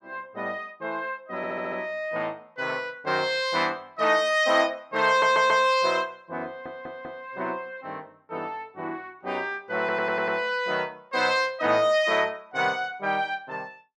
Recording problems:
stutter; 4 times, first at 1.5 s

